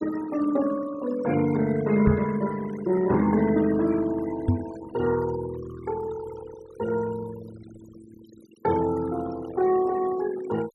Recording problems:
denoising artefacts; signal-to-artefact ratio 16 dB
microphone thump; at 2 s and at 4.5 s; peak +8 dB vs average level

